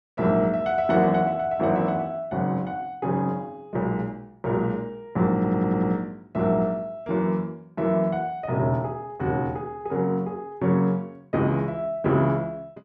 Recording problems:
audio stuttering; at 5.5 s

